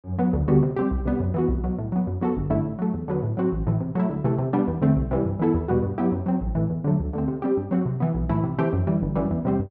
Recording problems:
none

